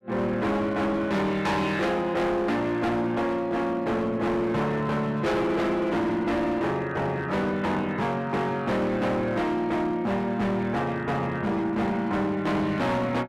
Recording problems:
distortion; hard clipping, signal-to-distortion ratio 7 dB

